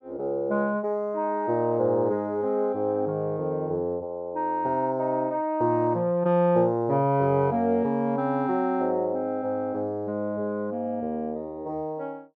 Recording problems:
none

